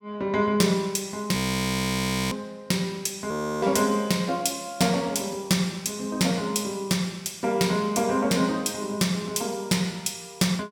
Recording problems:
audio freezing; at 1.5 s for 1 s and at 3.5 s

